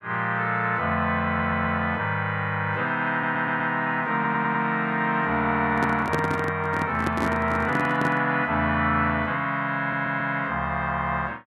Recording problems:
stutter; 4 times, first at 1.5 s
microphone handling noise; from 5.5 to 8 s; peak +1 dB vs average level

